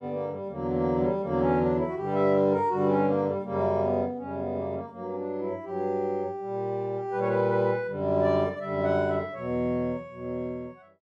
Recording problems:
none

